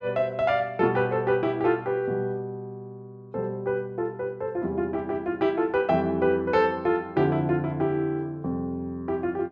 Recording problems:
none

